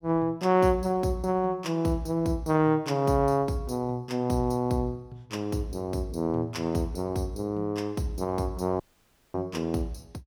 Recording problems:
dropout; at 9 s for 0.5 s

